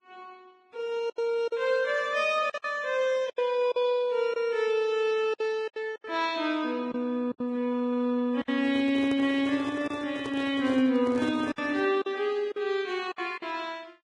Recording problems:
codec artefacts; Vorbis, log-spectral distance 2 dB, nothing above 10.4 kHz
packet loss; 7% of the sound replaced, filled with silence
microphone handling noise; from 8.5 to 12 s; peak -5 dB vs average level

